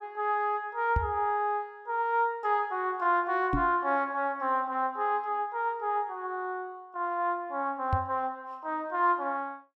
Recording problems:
microphone bump; at 1 s, at 3.5 s and at 8 s; peak +4 dB vs average level

